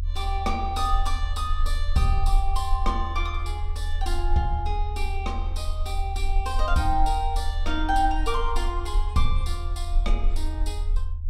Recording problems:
low-frequency rumble; below 40 Hz, strongest tone 20 Hz, SNR 0 dB

